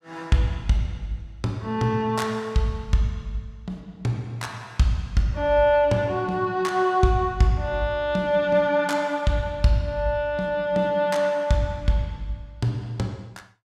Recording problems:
none

